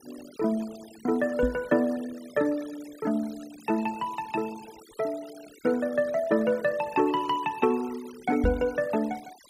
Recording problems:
denoising artefacts; signal-to-artefact ratio 21 dB
microphone bump; at 1.5 s and at 8.5 s; peak +4 dB vs average level

